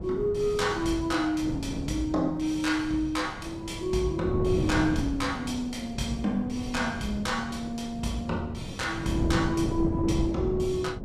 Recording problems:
wind noise; below 290 Hz, SNR 6 dB

